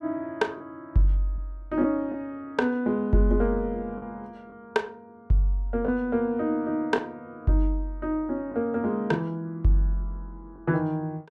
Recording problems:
lost packets; 2% of the sound replaced, filled with the last packet

